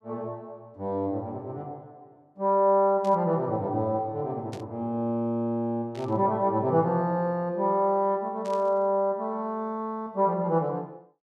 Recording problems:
static burst; 4 times, first at 3 s; peak -14 dB vs average level

